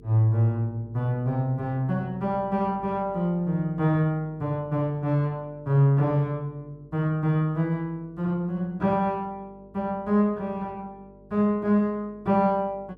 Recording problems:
hum; 50 Hz, harmonics up to 450 Hz, SNR 26 dB

